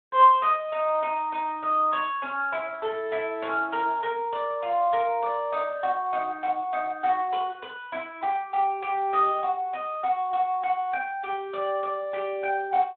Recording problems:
telephone audio; 280 Hz to 3.4 kHz, Speex

